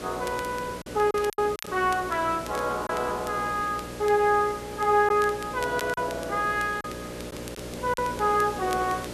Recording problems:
hum; 60 Hz, harmonics up to 600 Hz, SNR 14 dB
background hiss; slope -4 dB per octave, SNR 14 dB
crackling; vinyl, SNR 20 dB
packet loss; 4% of the sound replaced, filled with silence

